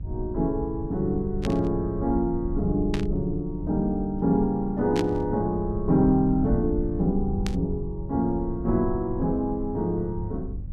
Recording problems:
hum; 50 Hz, harmonics up to 600 Hz, SNR 22 dB
low-frequency rumble; below 82 Hz, SNR 9 dB
static burst; 4 times, first at 1.5 s; peak -4 dB vs average level

